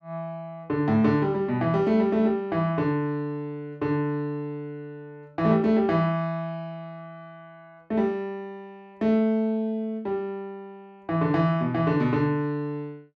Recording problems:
none

